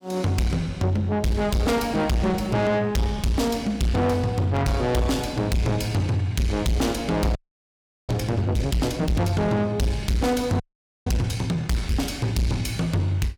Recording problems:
distorted audio; soft clipping, signal-to-distortion ratio 6 dB
audio freezing; at 7.5 s for 0.5 s and at 11 s

